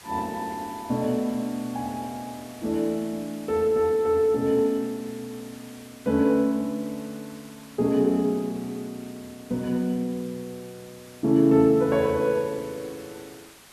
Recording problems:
hiss; slope -1 dB per octave, SNR 22 dB

